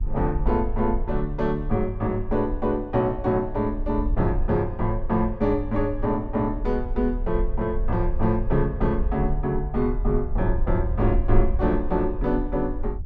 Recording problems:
rumble; below 50 Hz, SNR 6 dB

